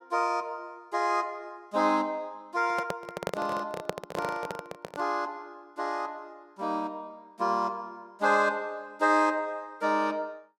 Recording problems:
microphone handling noise; from 2.5 to 5 s; peak +2 dB vs average level

